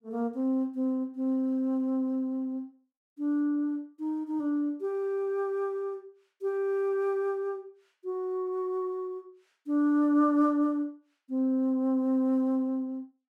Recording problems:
none

